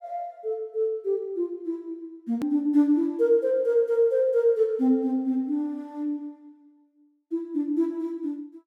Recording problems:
hard cut with a click; at 2.5 s

